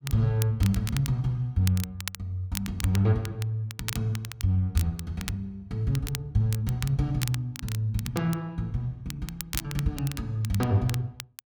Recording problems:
crackling; vinyl, SNR 11 dB

